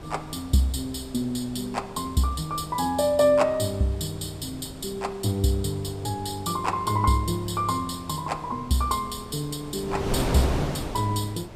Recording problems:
wind noise; below 750 Hz, SNR 11 dB

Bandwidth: 15 kHz